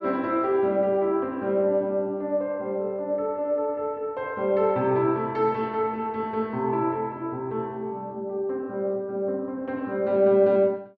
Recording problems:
none

